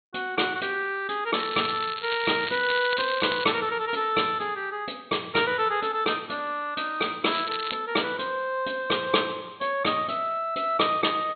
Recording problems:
treble cut off; nothing above 4.3 kHz
crackling; from 1.5 to 3.5 s and at 7.5 s; loose cable, SNR 8 dB

